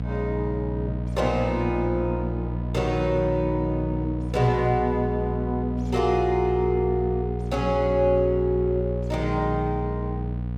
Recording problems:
hum; 60 Hz, harmonics up to 540 Hz, SNR 4 dB

